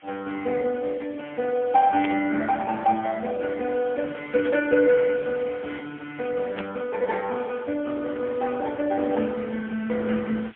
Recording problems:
telephone audio; 260 Hz to 3.5 kHz, AMR-NB, then MP3
background hiss; SNR 27 dB
burst of static; at 2 s, at 4.5 s and at 6.5 s; peak -5 dB vs average level

